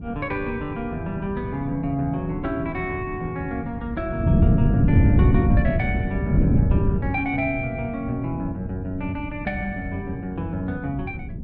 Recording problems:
wind noise; below 180 Hz, SNR -2 dB

